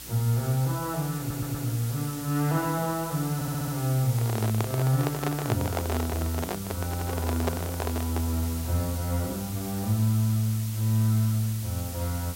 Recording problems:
hum; 60 Hz, harmonics up to 360 Hz, SNR 24 dB
background hiss; SNR 10 dB
audio stuttering; at 1 s, at 3.5 s and at 7 s
handling noise; from 4 to 8.5 s; peak +3 dB vs average level

